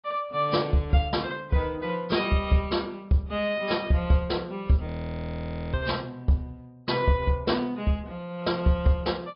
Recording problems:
low-pass filter; nothing above 5.2 kHz
codec artefacts; AAC, log-spectral distance 3 dB
audio freezing; at 5 s for 1 s

